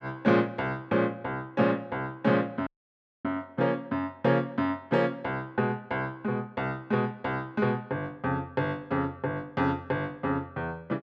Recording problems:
audio cutting out; at 2.5 s for 0.5 s

